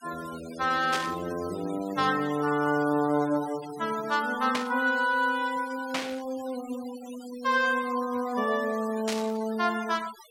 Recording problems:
noise reduction artefacts; signal-to-artefact ratio 17 dB
static burst; 4 times, first at 1 s; peak +1 dB vs average level

